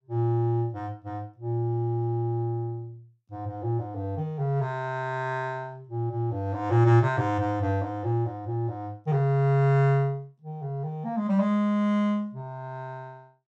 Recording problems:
none

